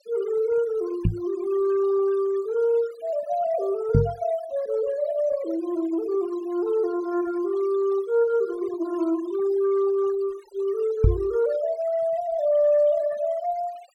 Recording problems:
denoising artefacts; signal-to-artefact ratio 23 dB
knock on the microphone; at 1 s, at 4 s and at 11 s; peak +8 dB vs average level

